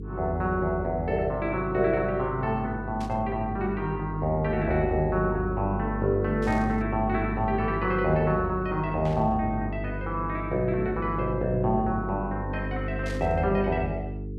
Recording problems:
hum; 50 Hz, harmonics up to 450 Hz, SNR 7 dB
static burst; 4 times, first at 3 s; peak -12 dB vs average level

